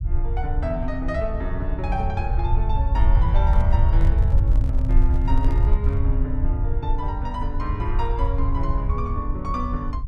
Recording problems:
rumble; below 72 Hz, SNR -6 dB
handling noise; from 3.5 to 6 s; peak -6 dB vs average level

